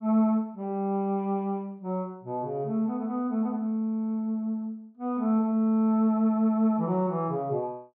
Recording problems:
none

